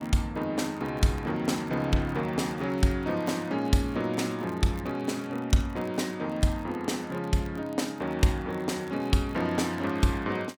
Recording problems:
crackling; vinyl, SNR 27 dB

